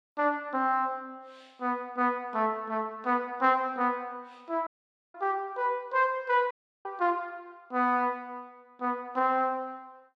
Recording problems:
audio cutting out; at 4.5 s and at 6.5 s

